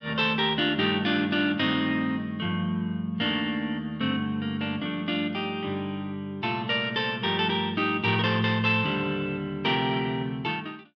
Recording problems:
none

